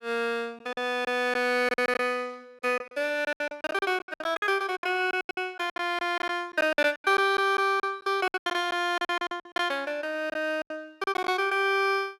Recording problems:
packet loss; 15% of the sound replaced, filled with silence

